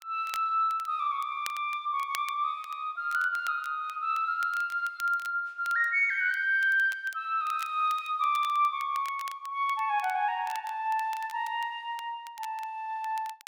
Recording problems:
crackling; vinyl, SNR 20 dB

